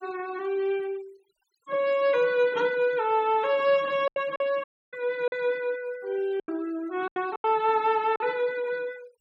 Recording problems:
denoising artefacts; signal-to-artefact ratio 24 dB
packet loss; 6% of the sound replaced, filled with silence
dropout; at 4.5 s

